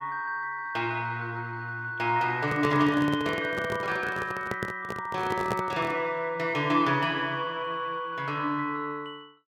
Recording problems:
handling noise; from 2.5 to 6 s; peak +1 dB vs average level

